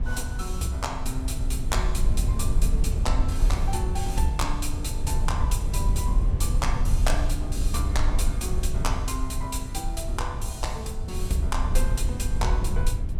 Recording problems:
low-frequency rumble; below 68 Hz, SNR -4 dB

